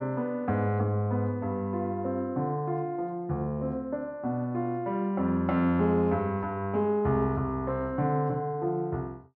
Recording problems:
none

